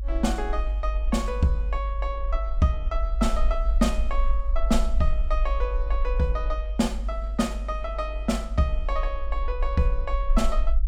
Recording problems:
low-frequency rumble; below 50 Hz, SNR 0 dB

